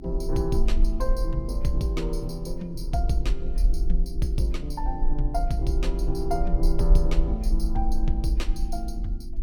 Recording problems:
electrical hum; 50 Hz, harmonics up to 350 Hz, SNR 15 dB
rumble; below 42 Hz, strongest tone 22 Hz, SNR -1 dB

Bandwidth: 17.5 kHz